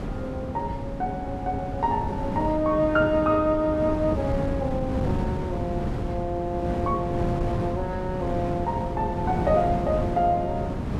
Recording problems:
wind on the microphone; below 300 Hz, SNR 4 dB

